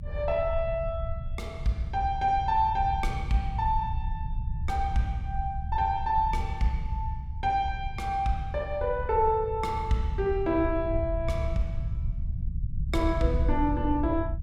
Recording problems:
rumble; below 84 Hz, SNR 5 dB

